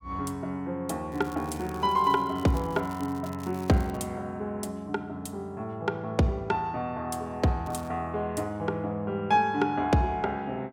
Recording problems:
crackling; from 1 to 4 s and at 7.5 s; loose cable, SNR 23 dB

